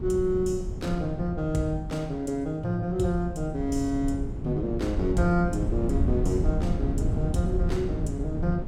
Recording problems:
wind on the microphone; below 130 Hz, SNR 3 dB

